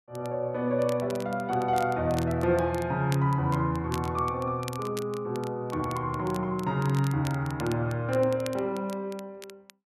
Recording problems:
crackling; vinyl, SNR 19 dB

